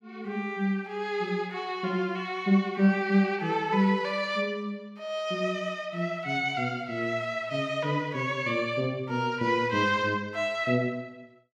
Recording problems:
none

